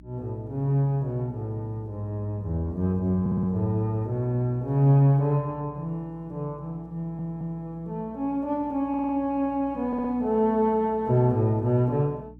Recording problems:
electrical hum; 60 Hz, harmonics up to 300 Hz, SNR 23 dB
stutter; 4 times, first at 3 s

